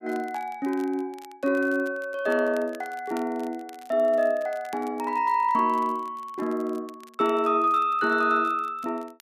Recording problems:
crackle; vinyl, SNR 27 dB

